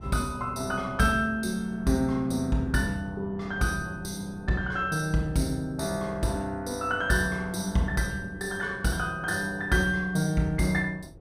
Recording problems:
wind noise; below 300 Hz, SNR 20 dB

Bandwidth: 15.5 kHz